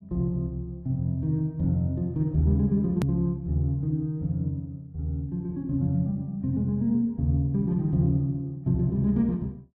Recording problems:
edit click; at 3 s

